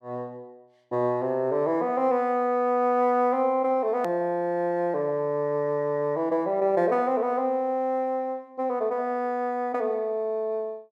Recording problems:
hard cut with a click; at 4 s

